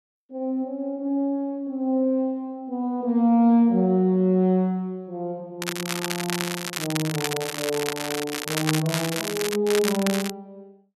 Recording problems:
crackle; from 5.5 to 9.5 s and at 9.5 s; loose cable, SNR 5 dB

